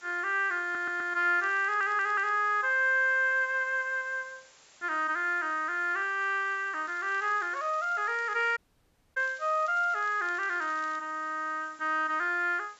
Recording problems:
treble cut off; nothing above 8 kHz
background hiss; slope 0 dB per octave, SNR 27 dB
audio stuttering; at 0.5 s and at 1.5 s
crackle; at 1.5 s and from 7 to 11 s; loose cable, SNR 27 dB
dropout; at 8.5 s for 0.5 s

